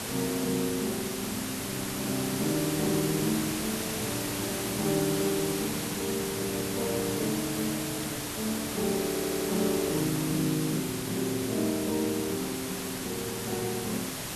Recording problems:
hiss; slope -2 dB per octave, SNR 2 dB
audio stuttering; at 9 s

